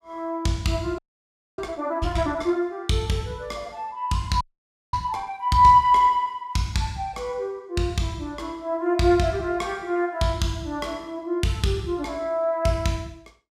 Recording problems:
audio freezing; at 1 s for 0.5 s and at 4.5 s for 0.5 s

